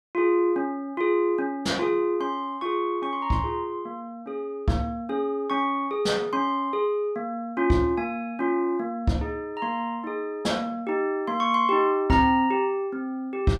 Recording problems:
none

